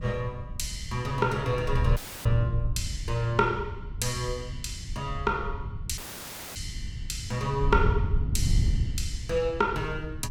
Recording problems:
wind on the microphone; below 100 Hz, SNR 3 dB
audio cutting out; at 2 s and at 6 s for 0.5 s; filled with static

